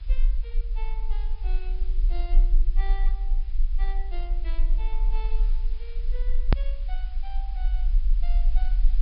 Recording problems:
treble cut off; nothing above 5.5 kHz
background hiss; SNR 12 dB
low-frequency rumble; below 38 Hz, strongest tone 26 Hz, SNR -17 dB
edit click; at 6.5 s

